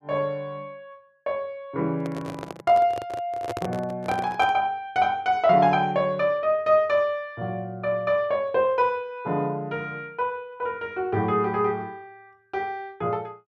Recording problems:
handling noise; from 2 to 4.5 s; peak -3 dB vs average level

